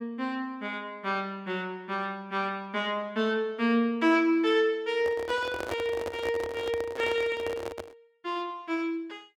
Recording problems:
microphone handling noise; from 5 to 8 s; peak -1 dB vs average level

